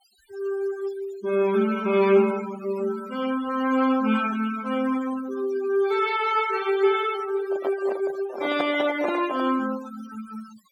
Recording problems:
denoising artefacts; signal-to-artefact ratio 16 dB
microphone handling noise; from 7.5 to 9.5 s; peak -1 dB vs average level

